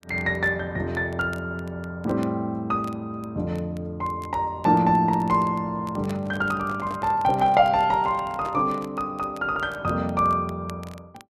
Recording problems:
crackle; vinyl, SNR 27 dB
microphone handling noise; from 6 to 9 s; peak -9 dB vs average level

